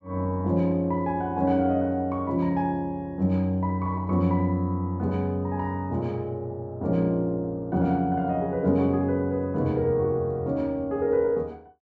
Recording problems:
treble missing; nothing above 7.9 kHz

